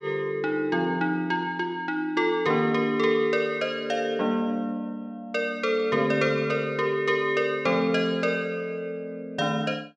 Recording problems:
none

